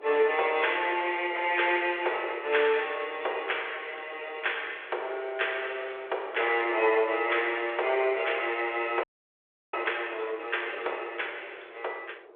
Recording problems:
telephone audio; 370 Hz to 3.5 kHz, G.726
wind noise; below 710 Hz, SNR 20 dB
frozen audio; at 9 s for 0.5 s

